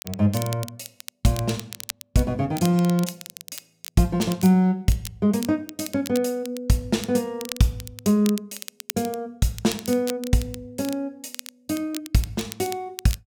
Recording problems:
crackling; vinyl, SNR 14 dB

